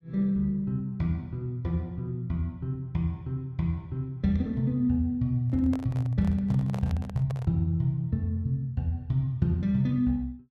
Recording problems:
handling noise; from 5.5 to 7.5 s; peak -7 dB vs average level

